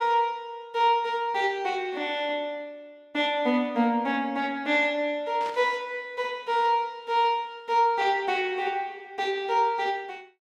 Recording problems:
static burst; at 5.5 s; peak -11 dB vs average level

